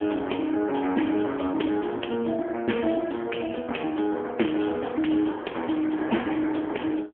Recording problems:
telephone audio; 170 Hz to 3.3 kHz, AMR-NB

